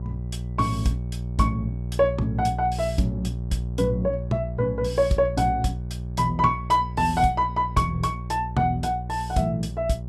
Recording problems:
mains hum; 60 Hz, harmonics up to 540 Hz, SNR 7 dB

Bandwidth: 14.5 kHz